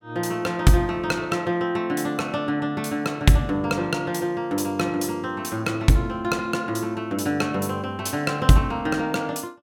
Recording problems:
none

